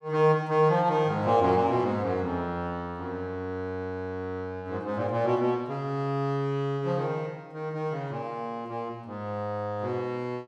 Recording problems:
none

